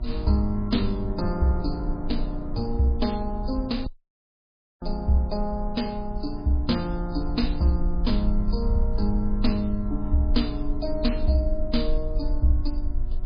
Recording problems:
lossy codec; MP3, log-spectral distance 2 dB, nothing above 11 kHz
hum; 60 Hz, harmonics up to 1.7 kHz, SNR 18 dB
low-frequency rumble; below 48 Hz, strongest tone 22 Hz, SNR 5 dB
audio cutting out; at 4 s for 1 s

